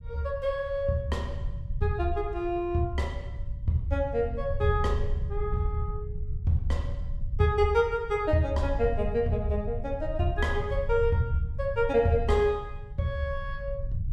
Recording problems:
low-frequency rumble; below 86 Hz, SNR 7 dB

